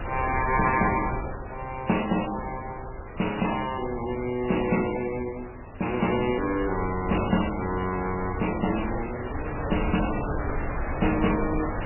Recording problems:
codec artefacts; MP3, log-spectral distance 8 dB, nothing above 2.8 kHz
wind noise; below 810 Hz, SNR 7 dB

